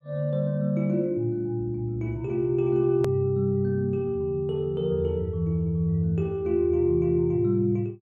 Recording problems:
click at an edit; at 3 s

